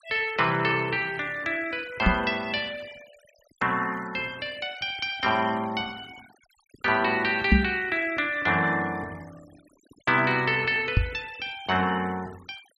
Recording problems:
denoising artefacts; signal-to-artefact ratio 23 dB
microphone thump; at 2 s, at 7.5 s and at 11 s; peak +9 dB vs average level

